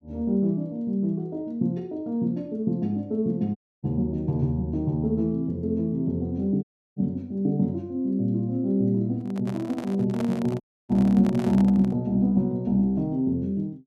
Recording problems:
audio cutting out; at 3.5 s, at 6.5 s and at 11 s
handling noise; from 9 to 12 s; peak -6 dB vs average level

